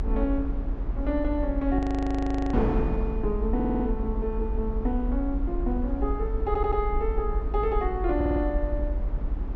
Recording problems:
treble cut off; nothing above 8 kHz
rumble; below 56 Hz, SNR 2 dB
wind on the microphone; below 460 Hz, SNR 8 dB
frozen audio; at 2 s for 0.5 s
audio stuttering; at 3.5 s, at 6.5 s and at 8 s

